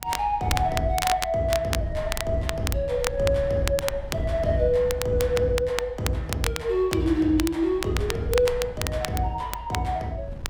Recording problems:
wind noise; below 110 Hz, SNR 13 dB
crackle; vinyl, SNR 8 dB

